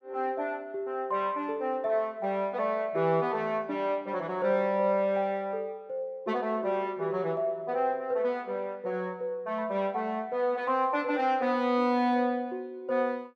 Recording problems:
none

